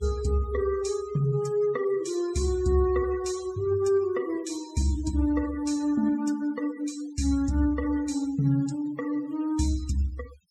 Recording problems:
noise reduction artefacts; signal-to-artefact ratio 19 dB

